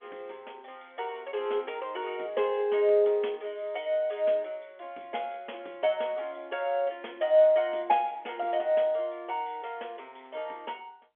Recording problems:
telephone audio; 280 Hz to 3.4 kHz, G.711

